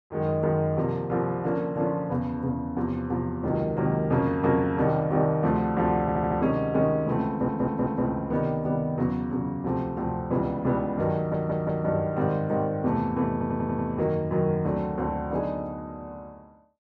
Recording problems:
stutter; 4 times, first at 6 s

